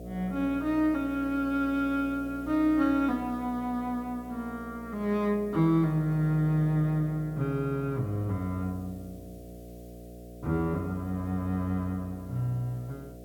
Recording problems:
hum; 60 Hz, harmonics up to 720 Hz, SNR 15 dB
background hiss; slope +1 dB per octave, SNR 29 dB

